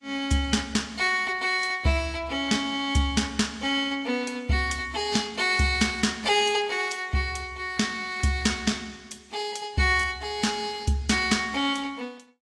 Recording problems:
lossy codec; AAC, log-spectral distance 3 dB

